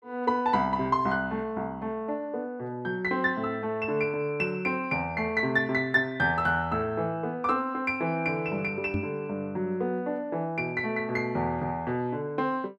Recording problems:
microphone bump; at 9 s; peak +1 dB vs average level

